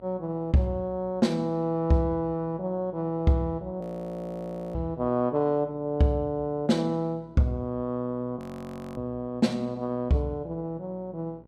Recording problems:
electrical hum; 60 Hz, harmonics up to 1.1 kHz, SNR 25 dB
frozen audio; at 4 s for 1 s and at 8.5 s for 0.5 s

